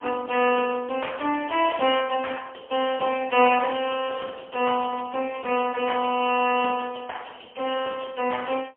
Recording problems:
telephone audio; 260 Hz to 3.1 kHz, AMR-NB, then MP3

